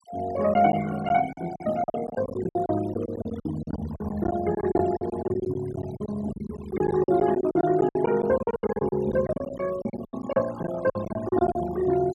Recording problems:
noise reduction artefacts; signal-to-artefact ratio 15 dB
packet loss; 17% of the sound replaced, filled with silence

